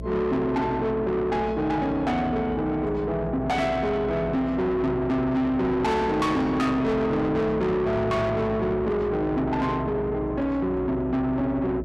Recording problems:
distortion; soft clipping, signal-to-distortion ratio 8 dB
electrical hum; 60 Hz, harmonics up to 660 Hz, SNR 11 dB

